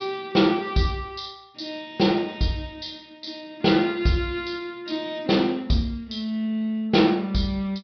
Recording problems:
low-pass filter; nothing above 5.5 kHz

